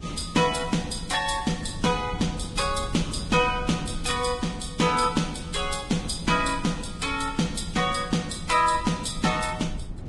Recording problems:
lossy codec; Vorbis, log-spectral distance 5 dB, nothing above 10.1 kHz
low-frequency rumble; below 130 Hz, SNR 13 dB

